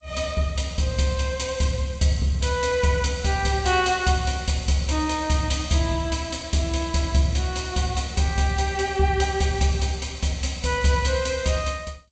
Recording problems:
lossy compression; G.722, log-spectral distance 6 dB, nothing above 8 kHz

